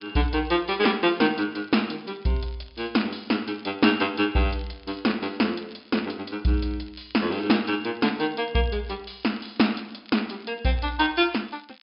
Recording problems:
treble missing; nothing above 5.5 kHz
crackling; vinyl, SNR 26 dB

